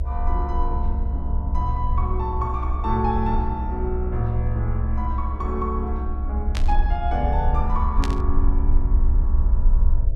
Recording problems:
hum; 60 Hz, harmonics up to 660 Hz, SNR 20 dB
rumble; below 66 Hz, strongest tone 24 Hz, SNR -3 dB
burst of static; at 6.5 s and at 8 s; peak +2 dB vs average level

